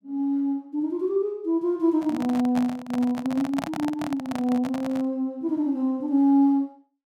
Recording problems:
microphone handling noise; from 2 to 5 s; peak -3 dB vs average level

